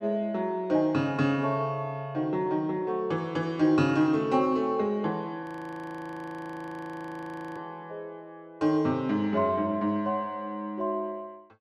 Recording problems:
frozen audio; at 5.5 s for 2 s

